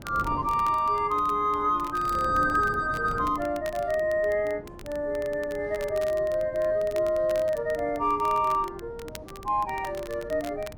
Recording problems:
wind noise; below 430 Hz, SNR 17 dB
crackling; vinyl, SNR 22 dB

